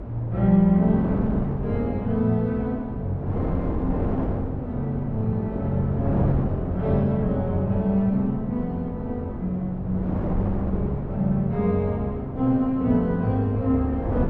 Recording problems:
wind noise; below 370 Hz, SNR 7 dB

